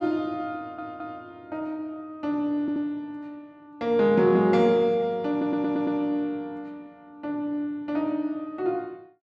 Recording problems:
stutter; at 0.5 s, at 2.5 s and at 5.5 s

